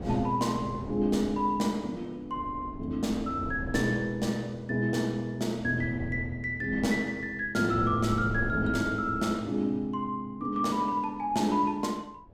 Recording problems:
wind noise; below 300 Hz, SNR 12 dB

